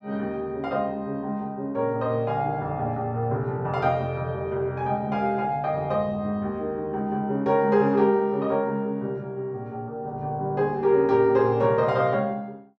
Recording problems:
none

